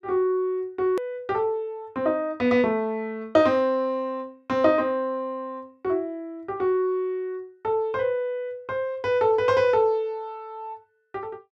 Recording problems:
hard cut with a click; at 1 s

